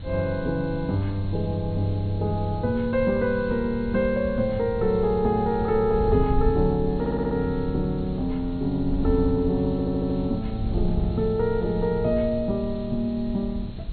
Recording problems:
treble cut off; nothing above 4.3 kHz
background hiss; SNR 26 dB
wind on the microphone; below 110 Hz, SNR 8 dB
stutter; at 7 s and at 9.5 s

